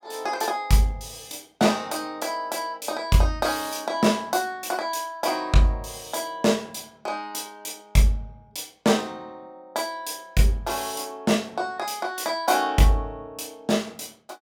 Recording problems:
none

